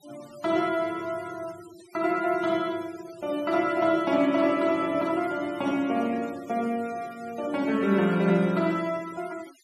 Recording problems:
denoising artefacts; signal-to-artefact ratio 22 dB

